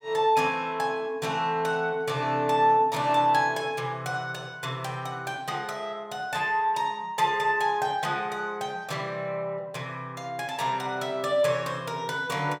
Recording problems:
none

